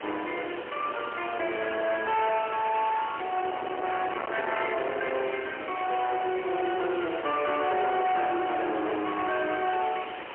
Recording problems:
telephone audio; 320 Hz to 3.1 kHz, AMR-NB, then MP3
distorted audio; hard clipping, signal-to-distortion ratio 6 dB
hiss; SNR 12 dB
wind on the microphone; below 1.5 kHz, SNR 11 dB

